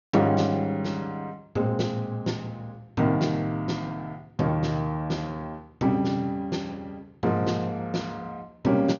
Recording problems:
treble cut off; nothing above 6.8 kHz

